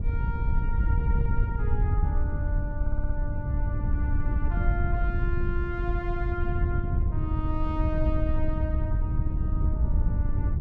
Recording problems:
wind on the microphone; below 88 Hz, SNR -8 dB
stutter; at 3 s

